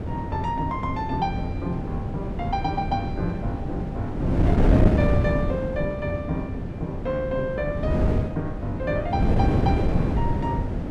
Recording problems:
wind noise; below 270 Hz, SNR -3 dB

